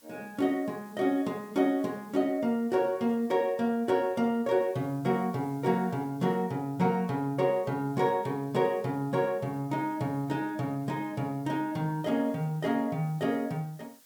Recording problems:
background hiss; slope 0 dB per octave, SNR 28 dB

